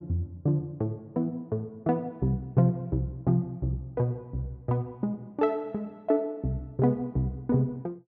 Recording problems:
none

